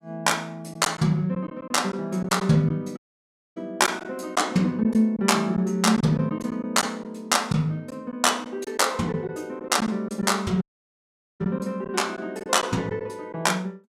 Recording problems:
packet loss; 5% of the sound replaced, filled with silence
audio cutting out; at 3 s for 0.5 s and at 11 s for 1 s

